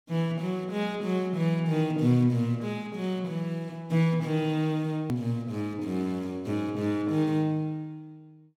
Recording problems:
edit click; at 5 s

